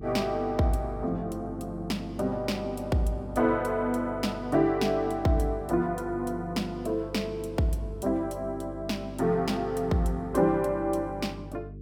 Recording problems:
hum; 50 Hz, harmonics up to 450 Hz, SNR 14 dB

